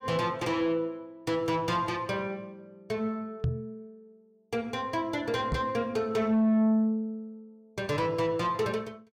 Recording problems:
distorted audio; soft clipping, signal-to-distortion ratio 10 dB
microphone bump; at 3.5 s and at 5.5 s; peak +3 dB vs average level

